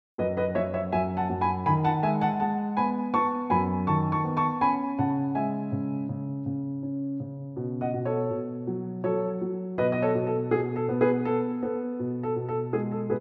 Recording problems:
none

